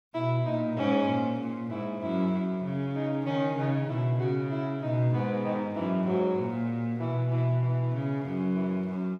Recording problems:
none

